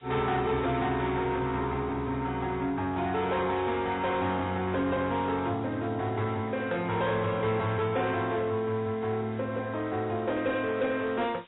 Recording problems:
treble cut off; nothing above 3.8 kHz
codec artefacts; MP3, log-spectral distance 3 dB
distorted audio; soft clipping, signal-to-distortion ratio 12 dB
hiss; SNR 28 dB

